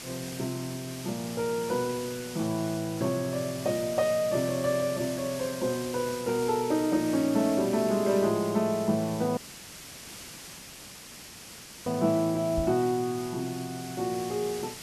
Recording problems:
background hiss; slope -1 dB per octave, SNR 12 dB
audio cutting out; at 9.5 s for 2.5 s
knock on the microphone; at 13 s; peak -1 dB vs average level

